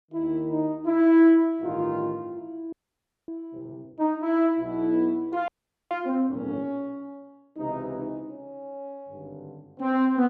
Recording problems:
audio freezing; at 2.5 s for 0.5 s and at 5.5 s

